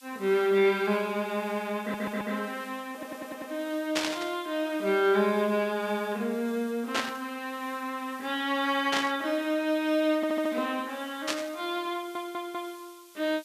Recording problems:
hiss; SNR 22 dB
audio stuttering; 4 times, first at 2 s
burst of static; 4 times, first at 4 s; peak +4 dB vs average level

